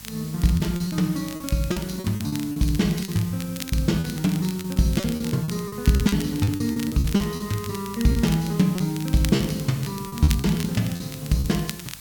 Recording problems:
electrical hum; 50 Hz, harmonics up to 550 Hz, SNR 24 dB
background hiss; slope +2 dB per octave, SNR 17 dB
crackling; vinyl, SNR 15 dB
lost packets; 12% of the sound replaced, filled with repeated pitch periods

